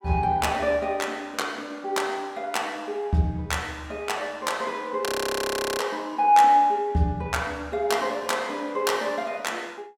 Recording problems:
frozen audio; at 5 s for 0.5 s

